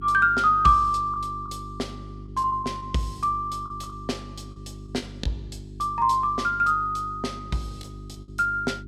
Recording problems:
hum; 50 Hz, harmonics up to 400 Hz, SNR 16 dB
lost packets; 4% of the sound replaced, filled with the last packet

